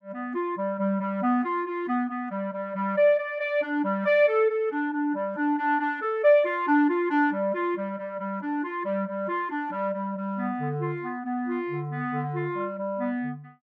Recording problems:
none

